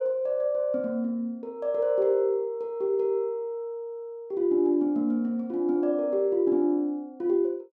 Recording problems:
none

